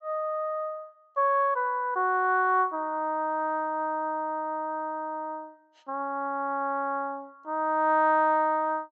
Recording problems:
treble missing; nothing above 8 kHz

